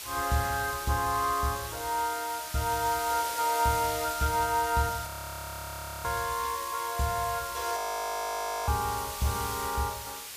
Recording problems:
hiss; slope +2 dB per octave, SNR 7 dB
frozen audio; at 5 s for 1 s and at 8 s for 1 s

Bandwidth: 15 kHz